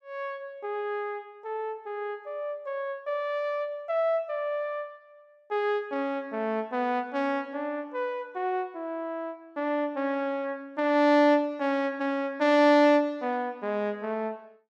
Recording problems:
none

